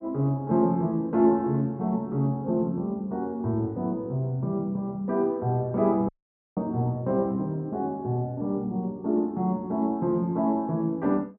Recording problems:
dropout; at 6 s

